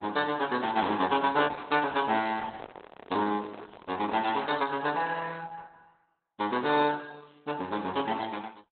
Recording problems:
codec artefacts; Opus, log-spectral distance 6 dB, nothing above 4 kHz
handling noise; from 2.5 to 4.5 s; peak -9 dB vs average level

